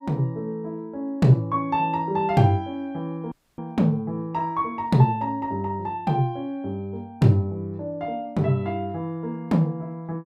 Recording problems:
dropout; at 3.5 s

